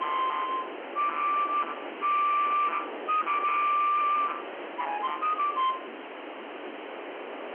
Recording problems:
phone line; 990 Hz to 2.3 kHz, G.711
distorted audio; hard clipping, signal-to-distortion ratio 8 dB
hiss; SNR 15 dB
wind on the microphone; below 1.2 kHz, SNR 13 dB

